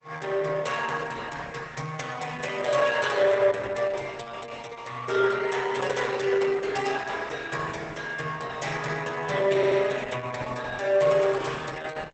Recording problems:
lossy compression; Opus, log-spectral distance 5 dB, nothing above 8 kHz
audio stuttering; at 9.5 s

